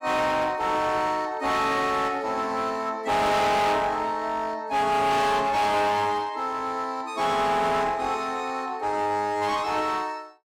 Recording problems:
distorted audio; hard clipping, uneven, signal-to-distortion ratio 6 dB

